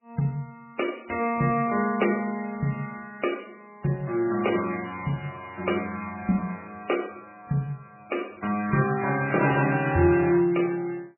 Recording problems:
lossy compression; MP3, log-spectral distance 5 dB, nothing above 2.4 kHz

